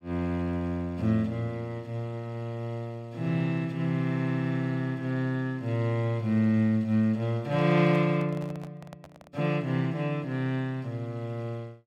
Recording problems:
microphone handling noise; from 7.5 to 9.5 s; peak -11 dB vs average level

